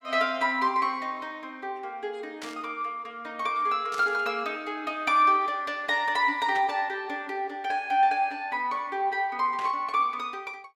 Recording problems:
static burst; 4 times, first at 2.5 s; peak -8 dB vs average level

